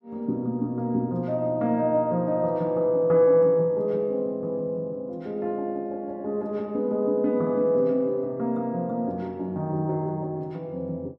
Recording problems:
none

